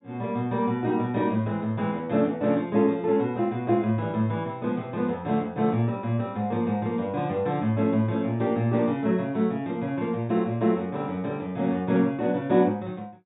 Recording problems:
low-pass filter; nothing above 4 kHz

